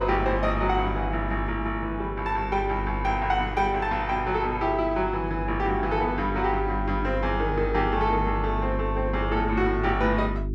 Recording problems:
hum; 50 Hz, harmonics up to 400 Hz, SNR 6 dB

